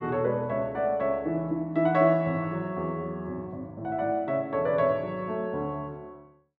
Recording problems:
none

